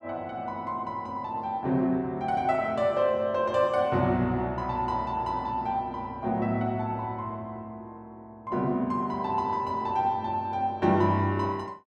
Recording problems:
none

